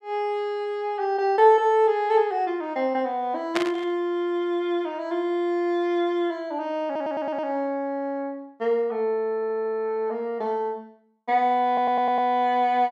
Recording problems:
burst of static; at 3.5 s; peak +2 dB vs average level
audio stuttering; at 7 s, at 9.5 s and at 12 s

